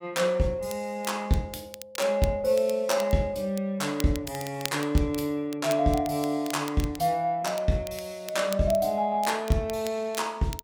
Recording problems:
crackling; vinyl, SNR 16 dB

